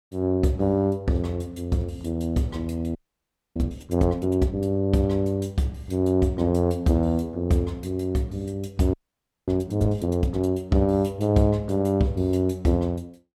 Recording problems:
audio freezing; at 3 s for 0.5 s and at 9 s for 0.5 s

